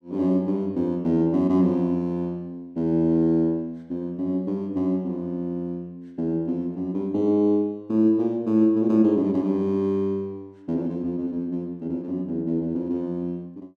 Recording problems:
none

